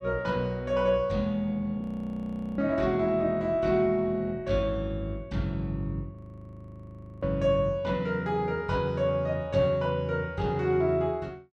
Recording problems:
audio freezing; at 2 s for 1 s and at 6 s for 1 s

